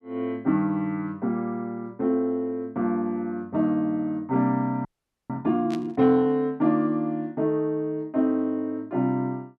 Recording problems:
frozen audio; at 5 s
static burst; at 5.5 s; peak -10 dB vs average level

